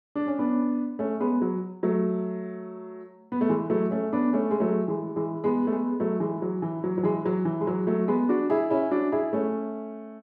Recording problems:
none

